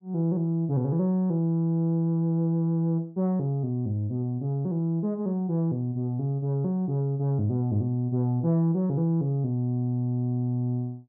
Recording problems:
none

